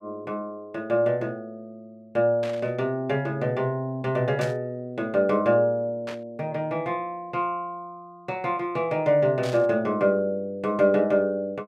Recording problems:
burst of static; 4 times, first at 2.5 s; peak -8 dB vs average level

